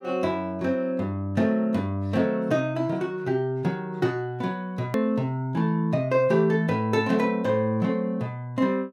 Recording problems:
edit click; at 5 s

